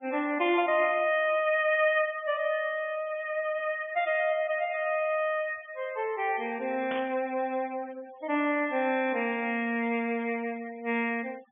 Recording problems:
low-pass filter; nothing above 3.5 kHz
denoising artefacts; signal-to-artefact ratio 24 dB
burst of static; at 7 s; peak -6 dB vs average level

